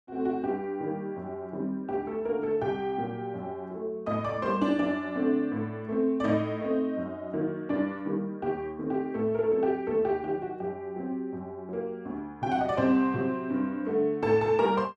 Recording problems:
none

